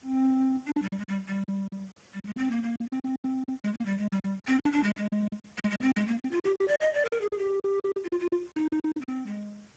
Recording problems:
lossy codec; Speex, log-spectral distance 5 dB, nothing above 7.3 kHz
background hiss; slope -3 dB per octave, SNR 29 dB
lost packets; 18% of the sound replaced, filled with silence

